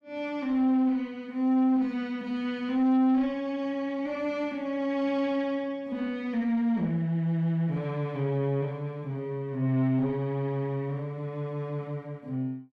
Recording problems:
distorted audio; soft clipping, signal-to-distortion ratio 10 dB

